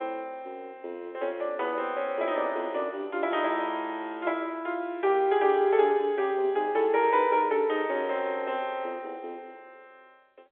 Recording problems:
telephone audio; 340 Hz to 3.5 kHz, G.711

